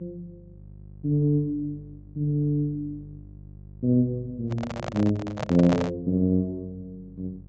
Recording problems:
treble cut off; nothing above 8 kHz
electrical hum; 50 Hz, harmonics up to 400 Hz, SNR 21 dB
microphone handling noise; from 4.5 to 6 s; peak +2 dB vs average level

